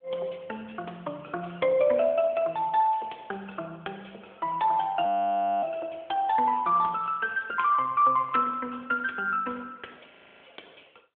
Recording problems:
telephone audio; 320 Hz to 3.4 kHz, AMR-NB
audio freezing; at 5 s for 0.5 s and at 10 s

